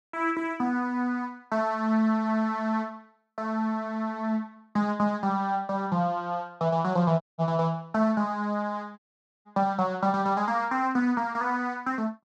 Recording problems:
dropout; at 7 s and at 9 s

